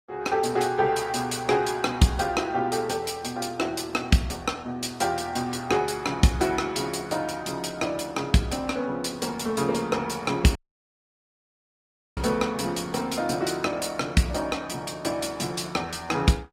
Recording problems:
lossy codec; Opus, log-spectral distance 4 dB, nothing above 18.9 kHz
dropout; at 11 s for 1.5 s

